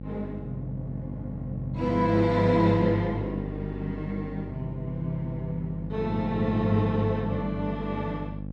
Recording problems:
hum; 50 Hz, harmonics up to 600 Hz, SNR 8 dB

